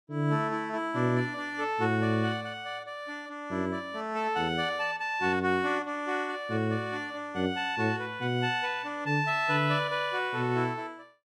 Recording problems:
none

